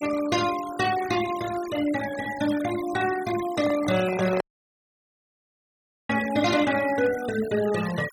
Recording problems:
denoising artefacts; signal-to-artefact ratio 13 dB
handling noise; at 3.5 s; peak -4 dB vs average level
dropout; at 4.5 s for 1.5 s

